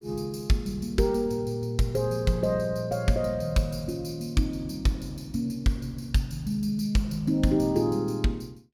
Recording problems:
none

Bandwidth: 17.5 kHz